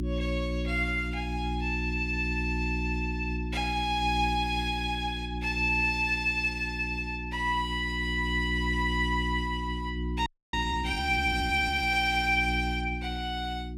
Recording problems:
hum; 60 Hz, harmonics up to 360 Hz, SNR 5 dB
audio freezing; at 10 s

